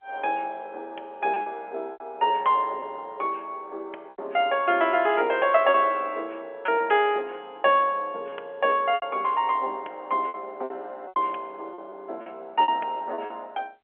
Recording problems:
telephone audio; 340 Hz to 3.3 kHz, G.711
packet loss; 7% of the sound replaced, filled with repeated pitch periods

